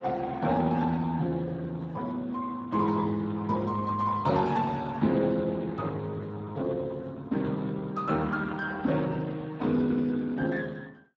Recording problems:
lossy codec; Speex, log-spectral distance 3 dB

